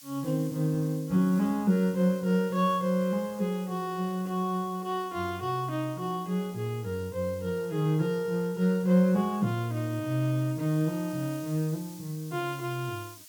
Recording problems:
background hiss; slope +5 dB per octave, SNR 21 dB

